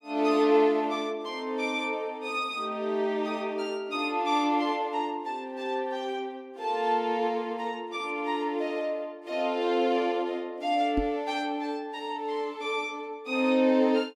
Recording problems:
microphone thump; at 11 s; peak +2 dB vs average level

